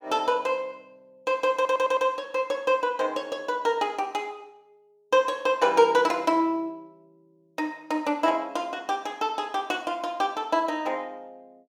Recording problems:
stutter; at 1.5 s

